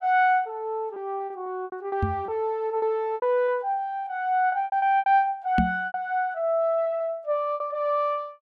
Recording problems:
lost packets; 10% of the sound replaced, filled with repeated pitch periods
microphone bump; at 2 s and at 5.5 s; peak +5 dB vs average level

